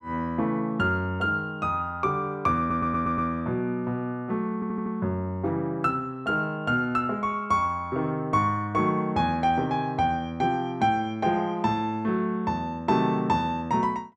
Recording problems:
audio stuttering; at 2.5 s and at 4.5 s

